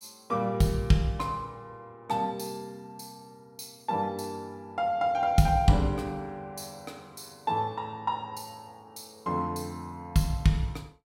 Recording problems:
none

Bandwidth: 16.5 kHz